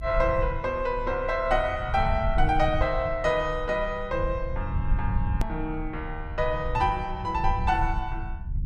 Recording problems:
rumble; below 86 Hz, SNR 5 dB
edit click; at 5.5 s

